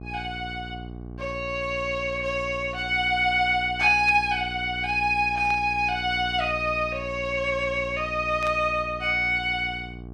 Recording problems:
hum; 60 Hz, harmonics up to 840 Hz, SNR 15 dB
burst of static; at 4 s, at 5.5 s and at 8.5 s; peak -11 dB vs average level

